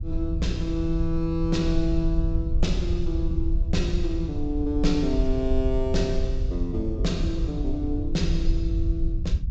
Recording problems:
low-pass filter; nothing above 8 kHz
low-frequency rumble; below 68 Hz, SNR 1 dB

